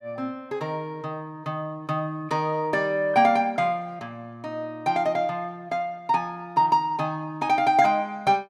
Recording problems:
none

